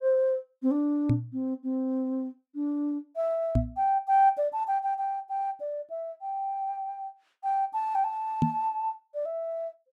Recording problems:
knock on the microphone; at 1 s, at 3.5 s and at 8.5 s; peak +8 dB vs average level

